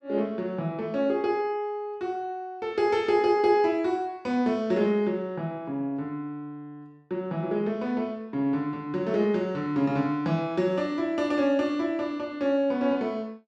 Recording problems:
none

